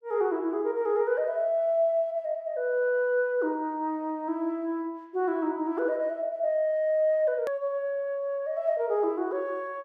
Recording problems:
click at an edit; at 7.5 s

